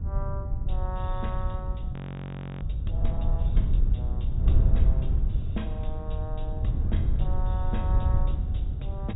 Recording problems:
low-pass filter; nothing above 4 kHz
hum; 60 Hz, harmonics up to 480 Hz, SNR 17 dB
low-frequency rumble; below 88 Hz, SNR -4 dB
wind on the microphone; below 80 Hz, SNR -10 dB
frozen audio; at 2 s for 0.5 s

